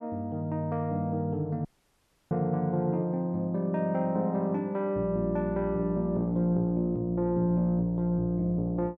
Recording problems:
audio cutting out; at 1.5 s for 0.5 s

